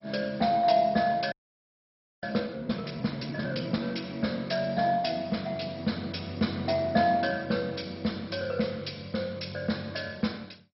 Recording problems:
lossy compression; MP2, log-spectral distance 7 dB, nothing above 5.5 kHz
audio freezing; at 1.5 s for 1 s

